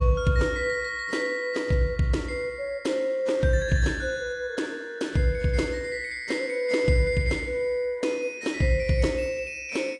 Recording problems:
lossy codec; AAC, log-spectral distance 2 dB

